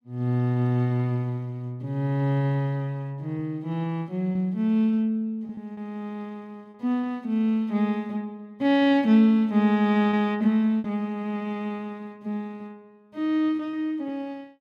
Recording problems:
lost packets; 3% of the sound replaced, filled with repeated pitch periods

